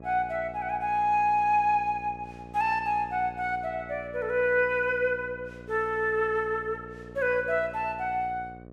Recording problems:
hum; 60 Hz, harmonics up to 1.3 kHz, SNR 18 dB

